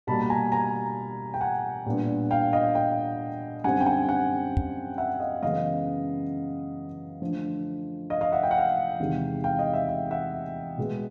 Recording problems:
microphone bump; at 4.5 s; peak +6 dB vs average level

